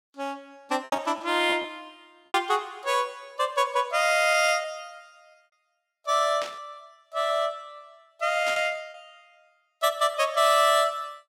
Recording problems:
lost packets; 6% of the sound replaced, filled with repeated pitch periods
burst of static; at 6.5 s and at 8.5 s; peak -7 dB vs average level

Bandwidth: 16.5 kHz